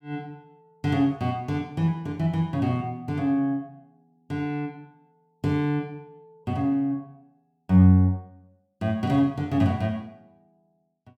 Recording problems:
none

